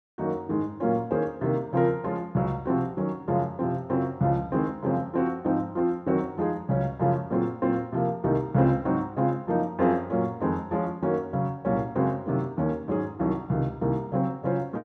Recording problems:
none

